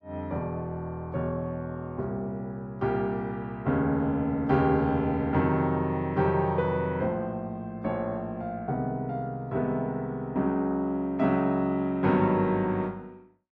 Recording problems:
none

